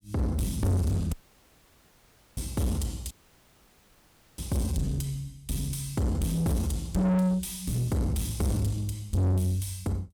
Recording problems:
distorted audio; soft clipping, signal-to-distortion ratio 6 dB
dropout; at 1 s for 1 s and at 3 s for 1.5 s

